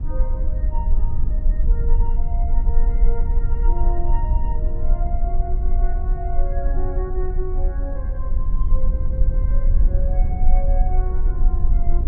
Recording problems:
rumble; below 44 Hz, strongest tone 18 Hz, SNR -12 dB

